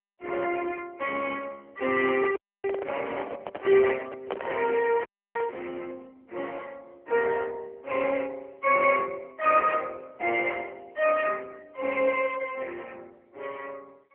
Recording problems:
telephone audio; 300 Hz to 3.1 kHz, AMR-NB
handling noise; from 2 to 5.5 s; peak -3 dB vs average level
dropout; at 2.5 s and at 5 s

